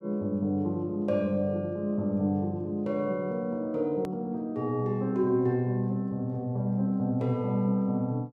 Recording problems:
click at an edit; at 4 s

